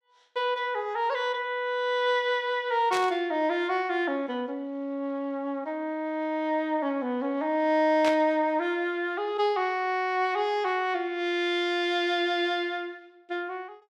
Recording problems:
static burst; at 3 s and at 8 s; peak -2 dB vs average level

